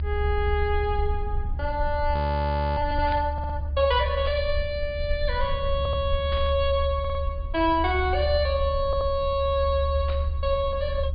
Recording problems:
treble missing; nothing above 4.9 kHz
rumble; below 74 Hz, strongest tone 72 Hz, SNR 4 dB
audio freezing; at 2 s for 0.5 s
static burst; 4 times, first at 3 s; peak -9 dB vs average level
audio stuttering; 4 times, first at 3.5 s

